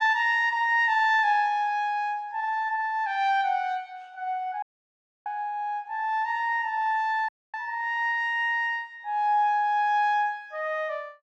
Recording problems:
dropout; at 4.5 s for 0.5 s and at 7.5 s

